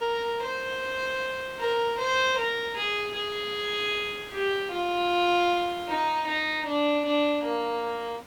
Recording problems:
background hiss; slope -4 dB per octave, SNR 19 dB

